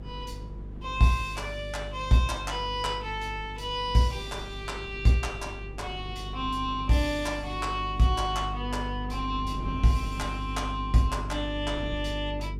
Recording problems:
hum; 50 Hz, harmonics up to 450 Hz, SNR 9 dB
wind noise; below 260 Hz, SNR 18 dB

